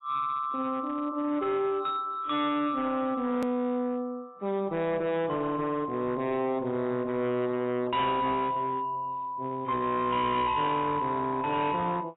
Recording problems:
codec artefacts; AAC, log-spectral distance 2 dB, nothing above 3.4 kHz
distorted audio; hard clipping, uneven, signal-to-distortion ratio 10 dB
click at an edit; at 3.5 s

